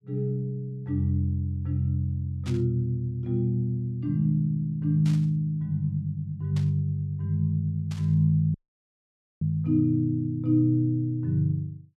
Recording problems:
burst of static; 4 times, first at 2.5 s; peak -12 dB vs average level
audio cutting out; at 8.5 s for 1 s

